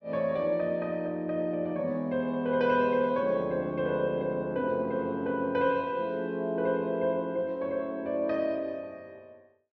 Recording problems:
low-pass filter; nothing above 5.9 kHz

